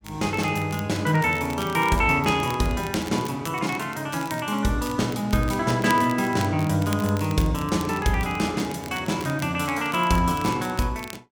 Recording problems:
crackle; vinyl, SNR 17 dB

